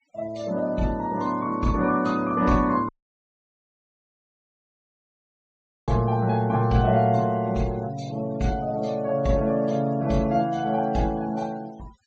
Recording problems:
treble missing; nothing above 8 kHz
noise reduction artefacts; signal-to-artefact ratio 26 dB
audio cutting out; at 3 s for 3 s

